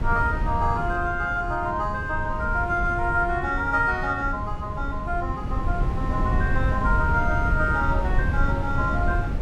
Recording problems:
wind noise; below 120 Hz, SNR 3 dB

